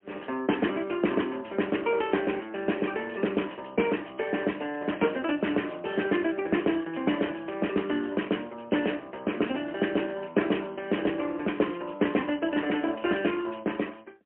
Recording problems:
phone line; 220 Hz to 3.1 kHz, AMR-NB, then MP3

